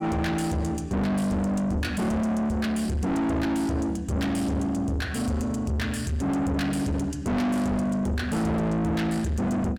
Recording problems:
distorted audio; soft clipping, signal-to-distortion ratio 5 dB

